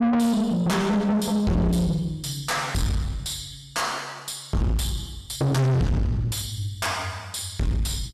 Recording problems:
distorted audio; soft clipping, signal-to-distortion ratio 6 dB

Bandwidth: 13.5 kHz